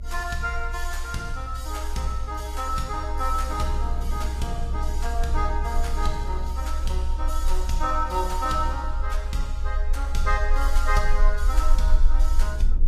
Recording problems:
codec artefacts; AAC, log-spectral distance 2 dB, nothing above 14.7 kHz
low-frequency rumble; below 60 Hz, strongest tone 24 Hz, SNR -1 dB
wind noise; below 230 Hz, SNR 13 dB

